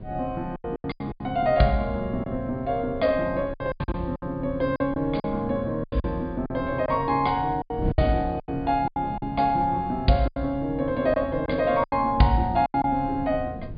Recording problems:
treble missing; nothing above 4.9 kHz
wind noise; below 200 Hz, SNR 13 dB
lost packets; 11% of the sound replaced, filled with silence

